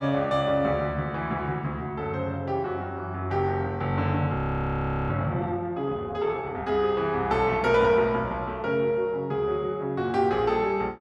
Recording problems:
frozen audio; at 4.5 s for 1 s

